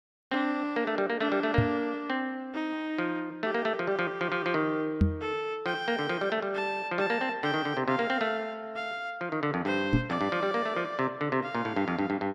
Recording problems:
microphone bump; at 1.5 s, at 5 s and at 10 s; peak +9 dB vs average level

